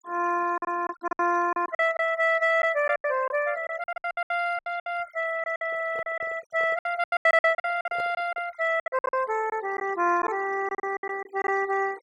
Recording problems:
noise reduction artefacts; signal-to-artefact ratio 21 dB
packet loss; 16% of the sound replaced, filled with silence
handling noise; from 5.5 to 8.5 s; peak -10 dB vs average level

